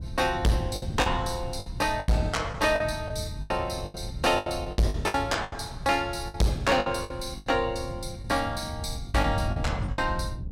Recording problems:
distortion; hard clipping, signal-to-distortion ratio 7 dB
wind on the microphone; below 140 Hz, SNR 9 dB
lost packets; 13% of the sound replaced, filled with the last packet

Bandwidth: 16 kHz